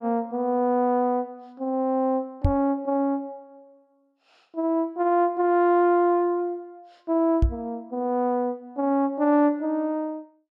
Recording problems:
microphone bump; at 2.5 s and at 7.5 s; peak +5 dB vs average level

